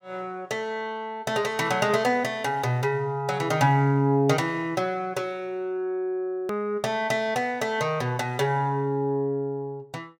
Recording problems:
edit click; at 6.5 s

